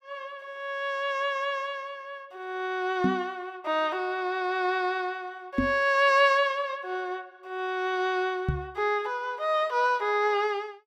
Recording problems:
microphone thump; at 3 s, at 5.5 s and at 8.5 s; peak +5 dB vs average level

